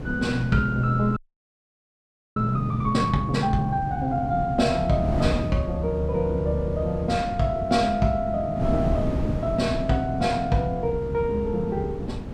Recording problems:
wind noise; below 270 Hz, SNR 7 dB
audio freezing; at 1 s for 1 s

